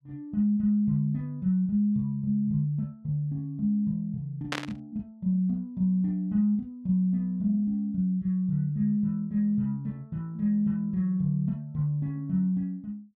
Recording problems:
burst of static; at 4.5 s; peak +1 dB vs average level

